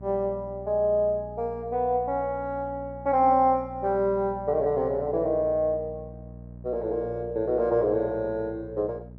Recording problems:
electrical hum; 60 Hz, harmonics up to 660 Hz, SNR 17 dB

